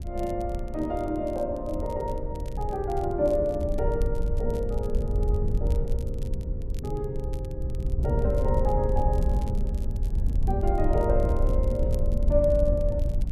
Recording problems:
wind on the microphone; below 76 Hz, SNR 0 dB
crackling; vinyl, SNR 25 dB

